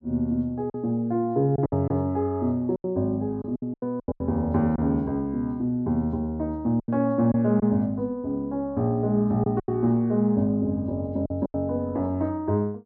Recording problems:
packet loss; 7% of the sound replaced, filled with silence

